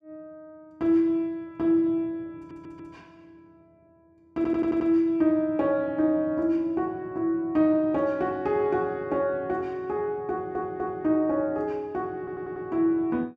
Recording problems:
stutter; 4 times, first at 2.5 s

